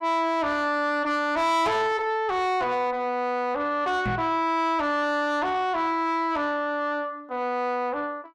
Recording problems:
distorted audio; soft clipping, signal-to-distortion ratio 8 dB
microphone bump; at 4 s; peak 0 dB vs average level

